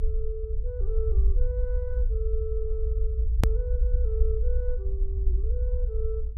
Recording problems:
low-frequency rumble; below 58 Hz, SNR -10 dB
hard cut with a click; at 3.5 s

